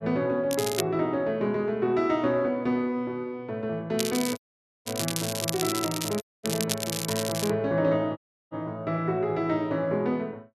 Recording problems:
crackling; at 0.5 s and from 4 to 7.5 s; loose cable, SNR 4 dB
dropout; at 4.5 s, at 6 s and at 8 s

